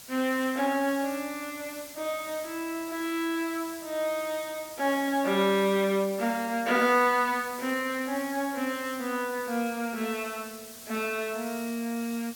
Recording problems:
background hiss; slope +1 dB per octave, SNR 14 dB

